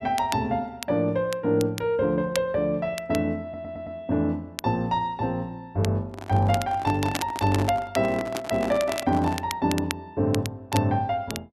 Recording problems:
crackle; vinyl, SNR 12 dB
audio stuttering; at 3.5 s
microphone handling noise; from 6 to 9.5 s; peak -2 dB vs average level

